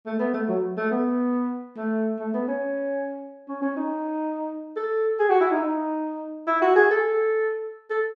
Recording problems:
none

